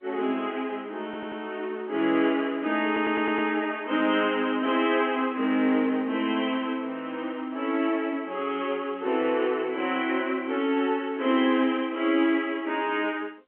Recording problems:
phone line; 190 Hz to 3.3 kHz, G.711
audio stuttering; at 1 s and at 3 s

